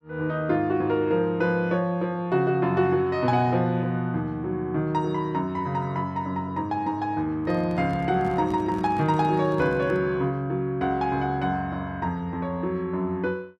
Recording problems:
handling noise; from 7.5 to 10 s; peak -8 dB vs average level

